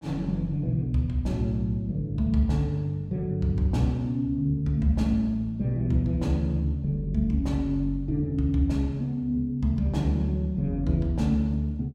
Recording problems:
none

